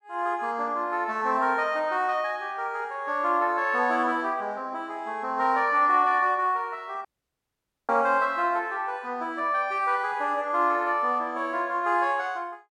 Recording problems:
audio cutting out; at 7 s for 1 s

